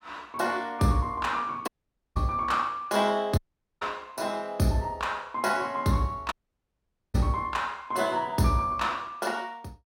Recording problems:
audio cutting out; at 1.5 s, at 3.5 s and at 6.5 s for 1 s

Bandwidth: 16.5 kHz